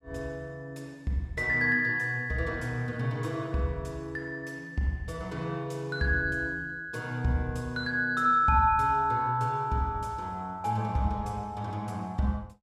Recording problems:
none

